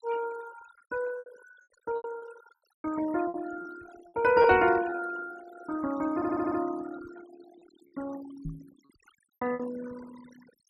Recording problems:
denoising artefacts; signal-to-artefact ratio 16 dB
packet loss; 8% of the sound replaced, filled with repeated pitch periods
microphone thump; at 4.5 s and at 8.5 s; peak -4 dB vs average level
stutter; at 6 s

